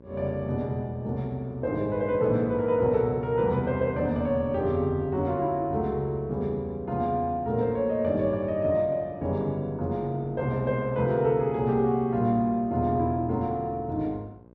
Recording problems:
hum; 60 Hz, harmonics up to 1.1 kHz, SNR 25 dB

